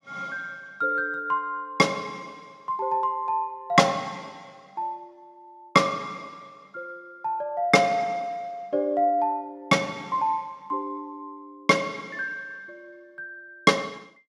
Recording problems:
none

